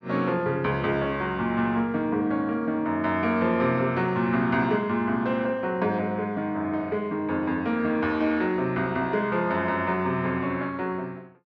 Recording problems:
none

